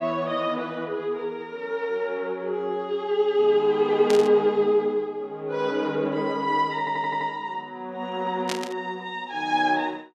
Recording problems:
static burst; at 4 s and at 8.5 s; peak -1 dB vs average level
stutter; at 7 s

